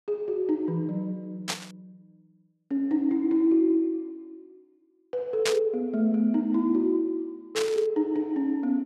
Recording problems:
burst of static; at 1.5 s, at 5.5 s and at 7.5 s; peak +3 dB vs average level

